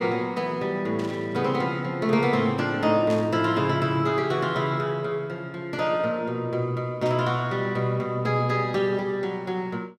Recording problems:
burst of static; at 1 s, at 3 s and at 7 s; peak -11 dB vs average level

